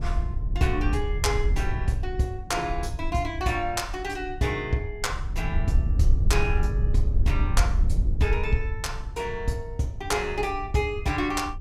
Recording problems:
wind noise; below 74 Hz, SNR 1 dB

